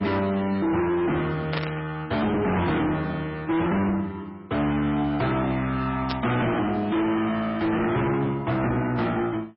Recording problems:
lossy compression; MP3, log-spectral distance 2 dB, nothing above 4.8 kHz
distortion; soft clipping, signal-to-distortion ratio 7 dB
static burst; at 1.5 s and at 6 s; peak -1 dB vs average level

